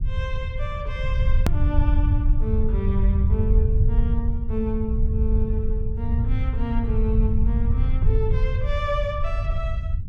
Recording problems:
low-frequency rumble; below 82 Hz, SNR -7 dB
click at an edit; at 1.5 s

